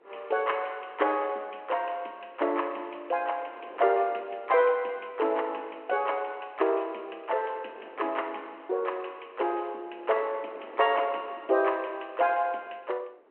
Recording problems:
phone line; 300 Hz to 3.1 kHz, G.726
wind noise; below 850 Hz, SNR 23 dB

